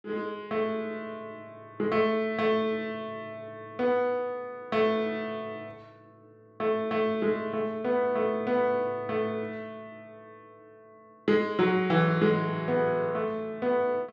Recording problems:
none

